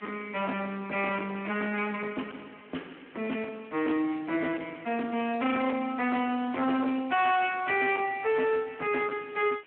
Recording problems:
phone line; 220 Hz to 3.2 kHz, Speex
distortion; hard clipping, signal-to-distortion ratio 8 dB
background hiss; SNR 25 dB

